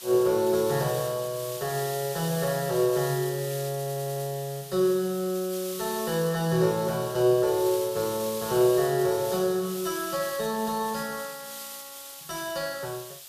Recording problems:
background hiss; slope +3 dB per octave, SNR 11 dB
audio stuttering; at 4 s

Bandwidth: 14.5 kHz